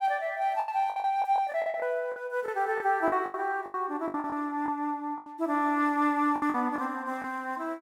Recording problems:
lost packets; 13% of the sound replaced, filled with the last packet

